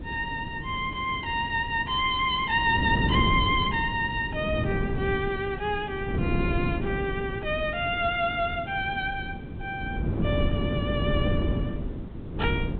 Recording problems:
treble missing; nothing above 4 kHz
hiss; SNR 27 dB
wind on the microphone; below 260 Hz, SNR 4 dB

